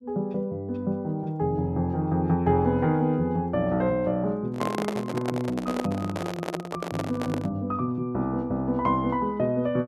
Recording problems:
microphone handling noise; from 4.5 to 7.5 s; peak +2 dB vs average level

